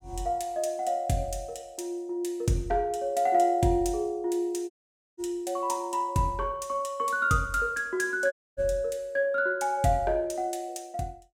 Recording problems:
dropout; at 4.5 s and at 8.5 s

